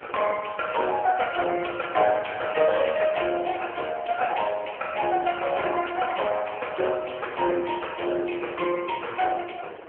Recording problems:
telephone audio; 300 Hz to 3.2 kHz, AMR-NB
wind noise; below 930 Hz, SNR 21 dB

